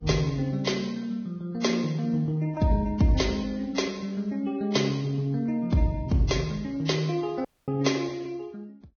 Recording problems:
codec artefacts; Vorbis, log-spectral distance 3 dB, nothing above 6.3 kHz
dropout; at 7.5 s

